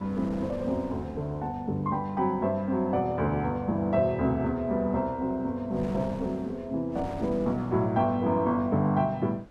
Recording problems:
wind noise; below 580 Hz, SNR 18 dB

